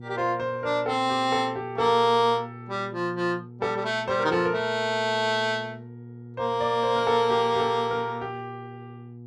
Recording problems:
hum; 60 Hz, harmonics up to 480 Hz, SNR 17 dB

